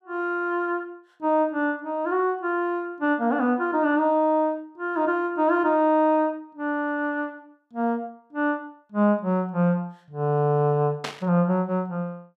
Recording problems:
static burst; at 11 s; peak -2 dB vs average level

